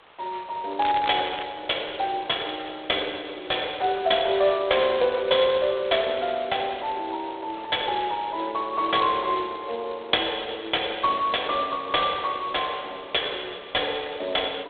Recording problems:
phone line; 340 Hz to 3.6 kHz, G.726
hiss; SNR 25 dB
crackle; at 1 s; loose cable, SNR 15 dB

